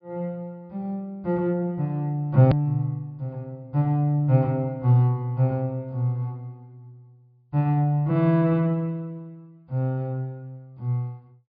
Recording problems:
treble missing; nothing above 5 kHz
edit click; at 2.5 s

